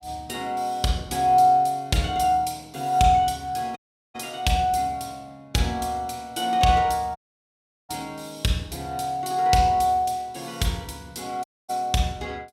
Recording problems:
audio cutting out; at 4 s, at 7 s for 0.5 s and at 11 s

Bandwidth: 16.5 kHz